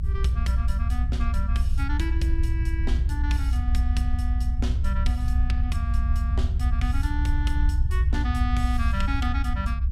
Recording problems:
low-frequency rumble; below 76 Hz, strongest tone 60 Hz, SNR -8 dB

